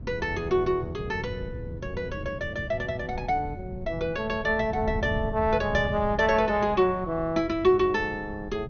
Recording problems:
low-pass filter; nothing above 6.5 kHz
wind noise; below 150 Hz, SNR 11 dB

